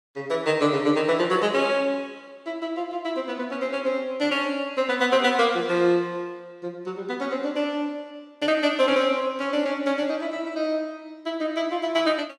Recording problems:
none

